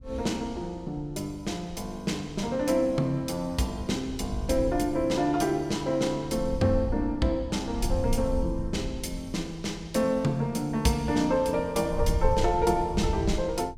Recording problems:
wind on the microphone; below 82 Hz, SNR 8 dB

